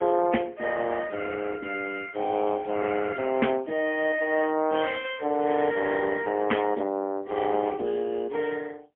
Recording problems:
telephone audio; 240 Hz to 3.3 kHz, AMR-NB, then MP3

